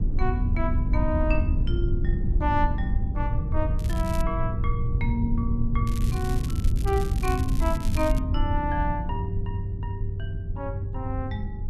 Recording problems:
rumble; below 94 Hz, SNR -3 dB
crackling; at 4 s and from 6 to 8 s; loose cable, SNR 13 dB

